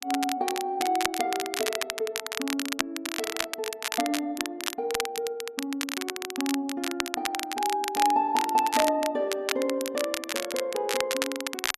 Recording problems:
crackle; vinyl, SNR 3 dB

